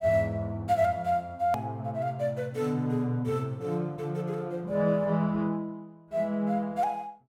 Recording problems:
edit click; at 1.5 s

